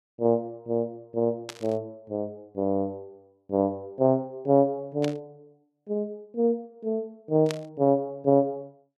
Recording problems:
static burst; at 1.5 s, at 5 s and at 7.5 s; peak -4 dB vs average level

